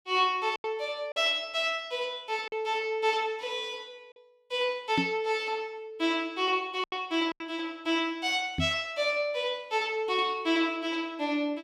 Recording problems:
packet loss; 3% of the sound replaced, filled with silence
microphone bump; at 5 s and at 8.5 s; peak +4 dB vs average level

